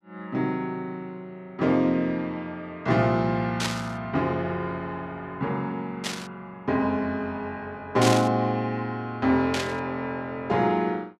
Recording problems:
burst of static; 4 times, first at 3.5 s; peak +3 dB vs average level

